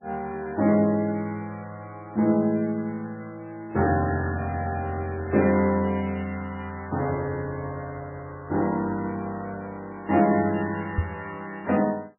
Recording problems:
lossy compression; MP3, log-spectral distance 3 dB, nothing above 2.7 kHz
microphone bump; at 11 s; peak +4 dB vs average level

